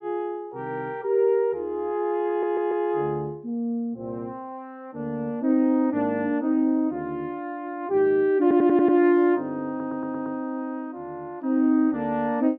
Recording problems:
stutter; at 2.5 s, at 8.5 s and at 9.5 s

